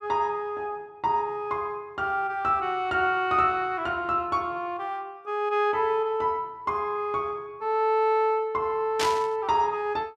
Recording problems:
burst of static; at 9 s; peak +2 dB vs average level

